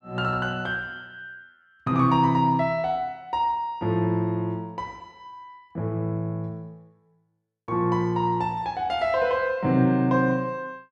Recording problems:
none

